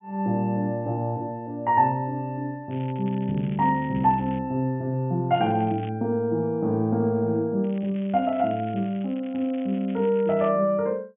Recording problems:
treble missing; nothing above 3.2 kHz
crackling; from 2.5 to 4.5 s, at 5.5 s and from 7.5 to 10 s; loose cable, SNR 25 dB

